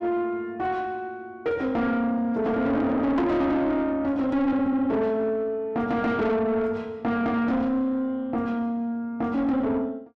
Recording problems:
distortion; soft clipping, signal-to-distortion ratio 10 dB

